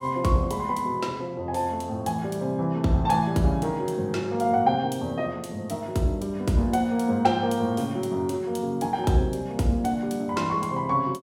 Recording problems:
none

